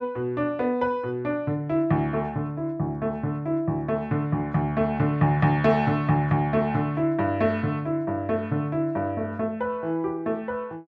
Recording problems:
none

